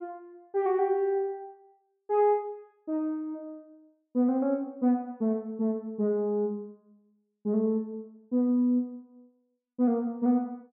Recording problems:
none

